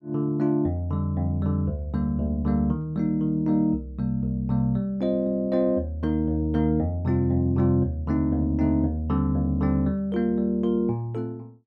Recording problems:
none

